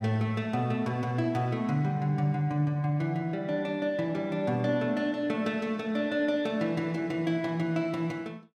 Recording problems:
none

